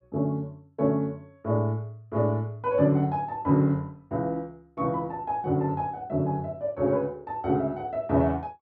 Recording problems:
none

